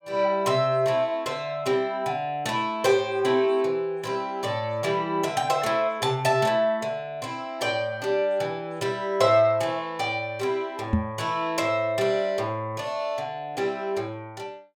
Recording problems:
knock on the microphone; at 11 s; peak +6 dB vs average level

